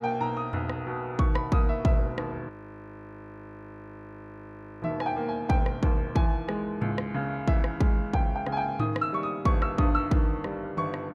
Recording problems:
audio freezing; at 2.5 s for 2.5 s

